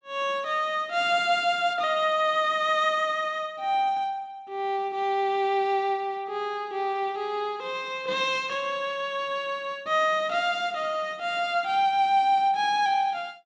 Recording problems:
none

